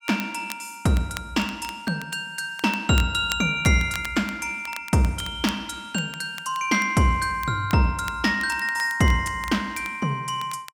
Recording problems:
crackle; vinyl, SNR 17 dB

